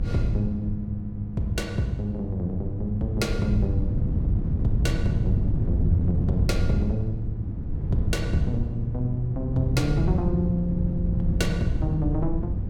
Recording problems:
mains hum; 50 Hz, harmonics up to 700 Hz, SNR 13 dB
wind on the microphone; below 140 Hz, SNR 1 dB

